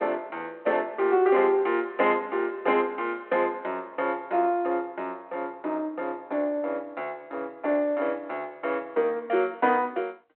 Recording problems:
phone line; 300 Hz to 3.2 kHz, G.726

